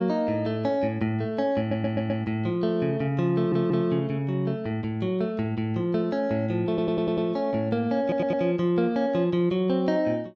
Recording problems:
stutter; 4 times, first at 1.5 s

